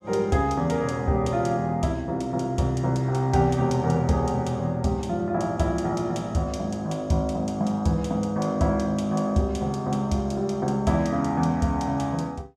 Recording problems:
none

